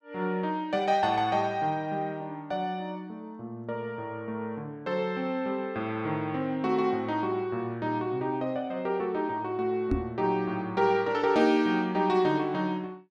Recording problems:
microphone bump; at 10 s; peak +4 dB vs average level

